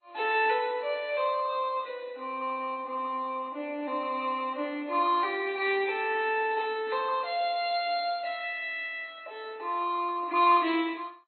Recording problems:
codec artefacts; MP2, then AAC, log-spectral distance 3 dB, nothing above 4.2 kHz

